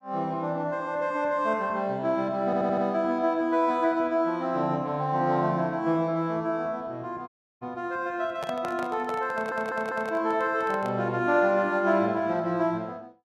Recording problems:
audio stuttering; at 2.5 s and at 9.5 s
audio cutting out; at 7.5 s
microphone handling noise; from 8.5 to 11 s; peak -5 dB vs average level

